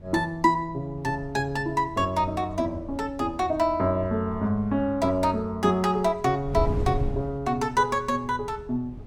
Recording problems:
wind noise; below 130 Hz, SNR 13 dB

